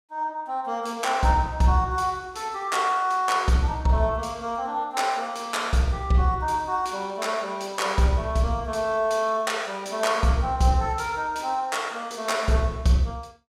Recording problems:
none

